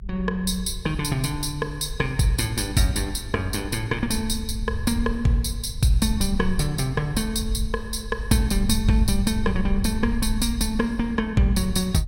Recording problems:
rumble; below 72 Hz, SNR 8 dB

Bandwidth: 16.5 kHz